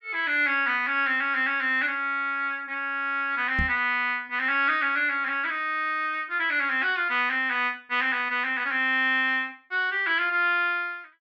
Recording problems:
microphone bump; at 3.5 s; peak -1 dB vs average level

